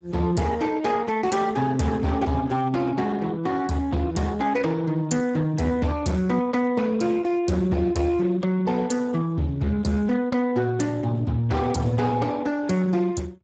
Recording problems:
codec artefacts; Speex, log-spectral distance 3 dB, nothing above 7.3 kHz
distorted audio; hard clipping, uneven, signal-to-distortion ratio 11 dB

